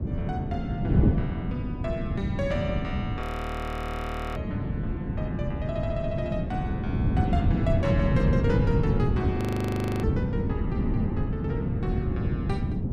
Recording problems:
wind noise; below 210 Hz, SNR -6 dB
audio freezing; at 3 s for 1 s and at 9.5 s for 0.5 s

